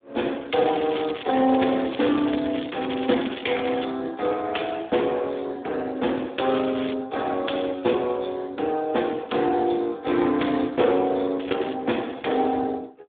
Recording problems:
phone line; 240 Hz to 3.6 kHz, Speex
crackle; from 0.5 to 4 s, at 6.5 s and at 11 s; loose cable, SNR 13 dB

